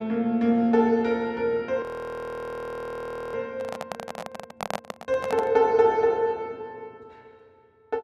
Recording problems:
audio freezing; at 2 s for 1.5 s
handling noise; from 3.5 to 5.5 s; peak 0 dB vs average level

